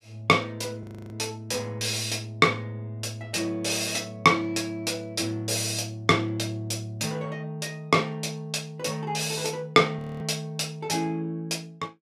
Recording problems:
frozen audio; at 1 s and at 10 s

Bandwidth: 14.5 kHz